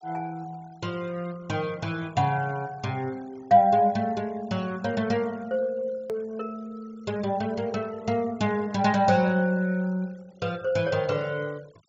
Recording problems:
treble cut off; nothing above 8 kHz
noise reduction artefacts; signal-to-artefact ratio 25 dB
click at an edit; at 6 s

